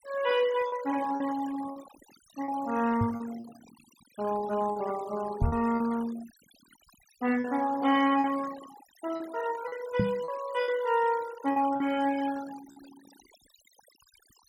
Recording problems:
noise reduction artefacts; signal-to-artefact ratio 16 dB
lost packets; 6% of the sound replaced, filled with repeated pitch periods
microphone thump; at 3 s, at 5.5 s and at 10 s; peak +5 dB vs average level

